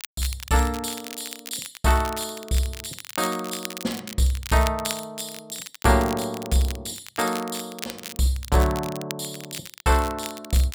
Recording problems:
crackle; vinyl, SNR 11 dB

